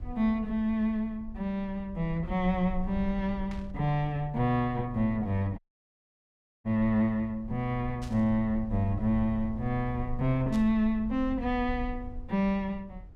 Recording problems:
low-frequency rumble; below 66 Hz, SNR 13 dB
static burst; at 3.5 s, at 8 s and at 11 s; peak -12 dB vs average level
dropout; at 5.5 s for 1 s

